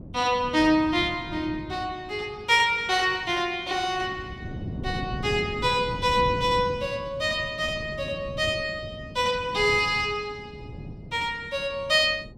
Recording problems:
wind noise; below 250 Hz, SNR 13 dB

